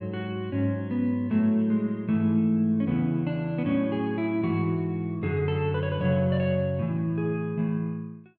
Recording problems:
none

